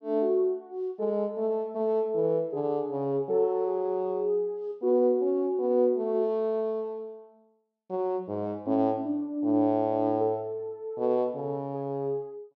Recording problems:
none

